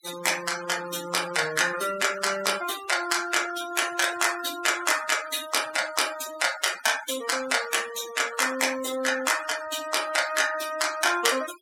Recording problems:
denoising artefacts; signal-to-artefact ratio 12 dB

